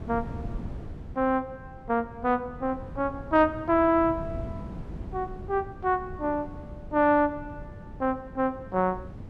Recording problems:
wind on the microphone; below 210 Hz, SNR 14 dB

